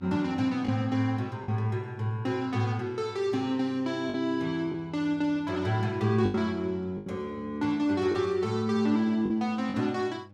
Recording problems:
hum; 50 Hz, harmonics up to 1.1 kHz, SNR 24 dB
lost packets; 4% of the sound replaced, filled with the last packet

